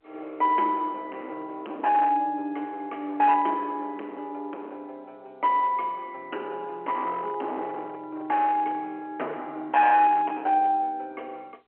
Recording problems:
telephone audio; 260 Hz to 3.4 kHz, G.711
distorted audio; hard clipping, signal-to-distortion ratio 12 dB

